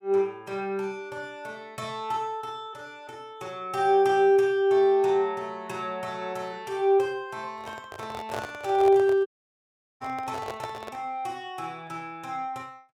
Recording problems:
handling noise; from 7.5 to 11 s; peak -3 dB vs average level
audio cutting out; at 9.5 s for 0.5 s

